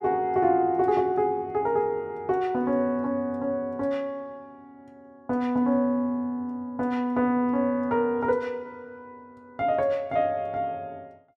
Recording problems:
none

